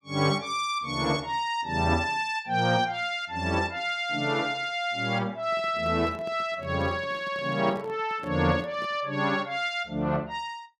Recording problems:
handling noise; from 5.5 to 9 s; peak -11 dB vs average level

